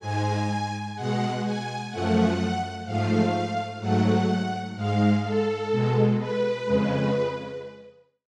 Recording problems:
none

